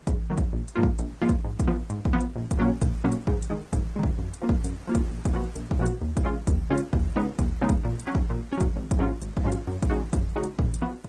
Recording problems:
codec artefacts; MP3, then Opus, log-spectral distance 3 dB
hiss; slope -5 dB per octave, SNR 22 dB

